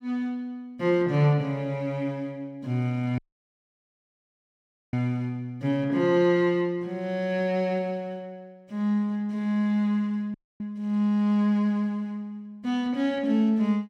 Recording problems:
audio cutting out; at 3 s for 1.5 s and at 10 s

